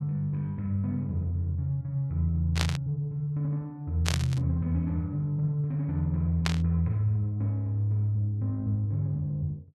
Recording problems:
static burst; at 2.5 s, at 4 s and at 6.5 s; peak +4 dB vs average level

